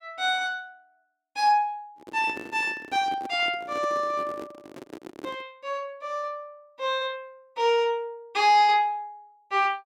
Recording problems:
microphone handling noise; from 2 to 5.5 s; peak -7 dB vs average level

